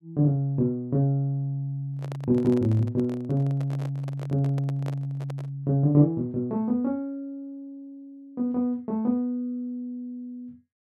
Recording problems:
handling noise; from 2 to 5.5 s; peak -8 dB vs average level

